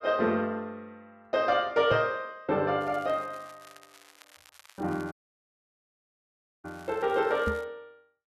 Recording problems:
knock on the microphone; at 2 s and at 7.5 s; peak -1 dB vs average level
crackle; from 3 to 7.5 s; loose cable, SNR 26 dB
audio cutting out; at 5 s for 1.5 s

